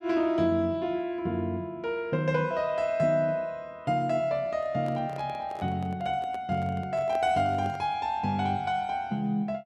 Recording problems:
microphone handling noise; from 4.5 to 8 s; peak -8 dB vs average level

